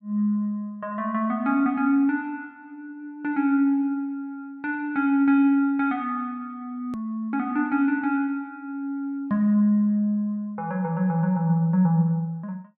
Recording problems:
click at an edit; at 7 s

